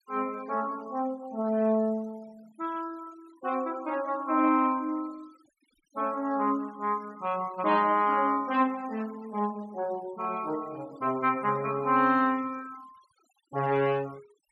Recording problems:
denoising artefacts; signal-to-artefact ratio 24 dB

